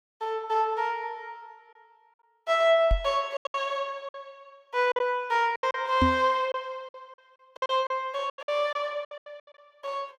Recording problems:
packet loss; 11% of the sound replaced, filled with silence
knock on the microphone; at 3 s and at 6 s; peak +6 dB vs average level

